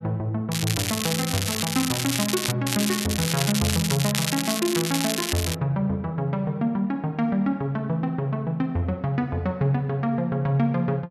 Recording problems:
crackle; from 0.5 to 2.5 s and from 2.5 to 5.5 s; loose cable, SNR 2 dB

